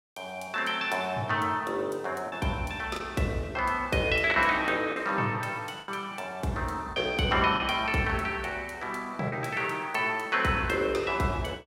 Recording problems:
lost packets; 3% of the sound replaced, filled with the last packet

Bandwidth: 16 kHz